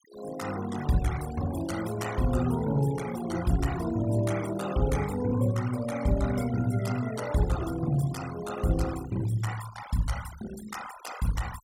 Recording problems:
denoising artefacts; signal-to-artefact ratio 13 dB

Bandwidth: 17 kHz